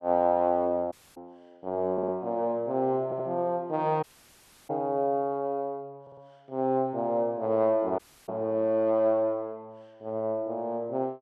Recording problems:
audio cutting out; at 1 s, at 4 s for 0.5 s and at 8 s
audio stuttering; at 2 s, at 3 s and at 6 s

